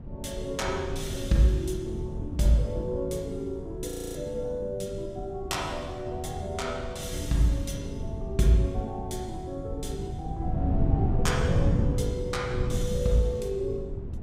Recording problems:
wind noise; below 160 Hz, SNR 3 dB
audio freezing; at 4 s

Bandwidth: 15.5 kHz